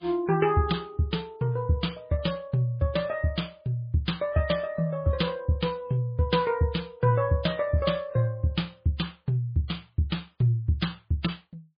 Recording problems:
lossy codec; MP3, log-spectral distance 2 dB, nothing above 4.5 kHz

